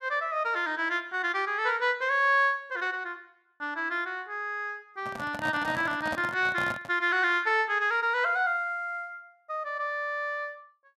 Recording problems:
handling noise; from 5 to 7 s; peak -4 dB vs average level

